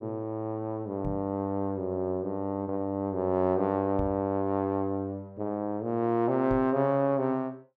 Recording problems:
microphone thump; at 1 s, at 4 s and at 6.5 s; peak -2 dB vs average level

